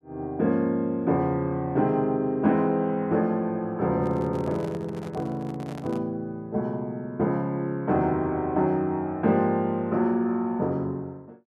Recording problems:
microphone handling noise; from 4 to 6 s; peak -11 dB vs average level

